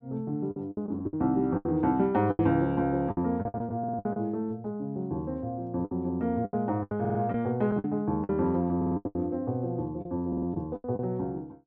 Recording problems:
packet loss; 12% of the sound replaced, filled with the last packet
audio stuttering; 4 times, first at 4 s

